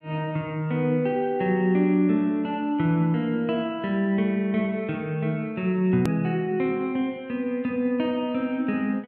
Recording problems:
click at an edit; at 6 s

